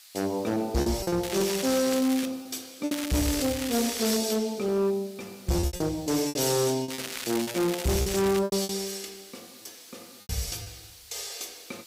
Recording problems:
distortion; hard clipping, signal-to-distortion ratio 10 dB
hiss; SNR 20 dB
packet loss; 9% of the sound replaced, filled with repeated pitch periods
crackle; from 1 to 2.5 s, from 3 to 4 s and from 7 to 8.5 s; loose cable, SNR 7 dB

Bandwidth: 15.5 kHz